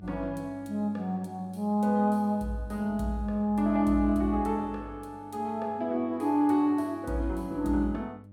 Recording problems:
hum; 50 Hz, harmonics up to 600 Hz, SNR 22 dB

